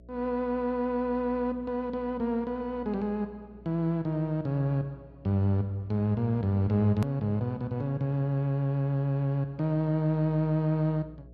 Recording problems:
electrical hum; 60 Hz, harmonics up to 660 Hz, SNR 23 dB
hard cut with a click; at 7 s

